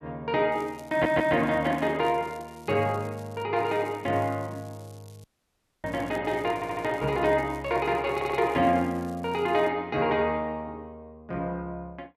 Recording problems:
crackling; from 0.5 to 3.5 s, from 3.5 to 6 s and from 6 to 9.5 s; loose cable, SNR 27 dB
audio stuttering; at 1 s, at 6.5 s and at 8 s
audio cutting out; at 5 s for 0.5 s

